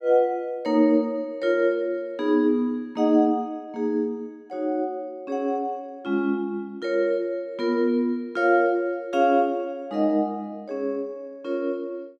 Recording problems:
none

